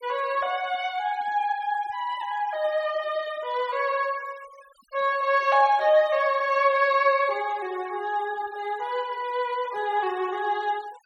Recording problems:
noise reduction artefacts; signal-to-artefact ratio 23 dB

